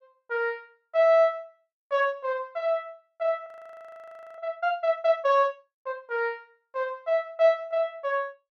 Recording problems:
audio freezing; at 3.5 s for 1 s

